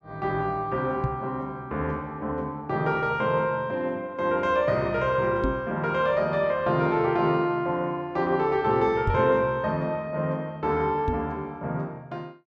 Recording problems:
knock on the microphone; 4 times, first at 1 s; peak +2 dB vs average level

